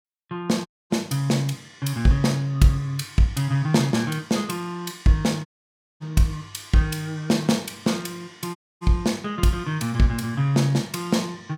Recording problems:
audio cutting out; at 0.5 s, at 5.5 s for 0.5 s and at 8.5 s

